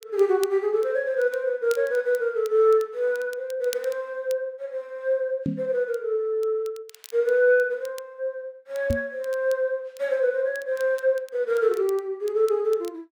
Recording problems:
crackling; vinyl, SNR 23 dB
knock on the microphone; at 5.5 s and at 9 s; peak +2 dB vs average level

